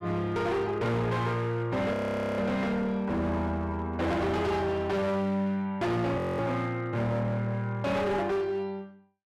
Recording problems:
distorted audio; hard clipping, signal-to-distortion ratio 7 dB
audio freezing; at 2 s and at 6 s

